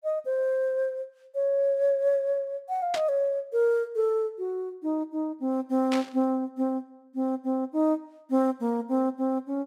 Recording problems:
static burst; at 3 s and at 6 s; peak -2 dB vs average level

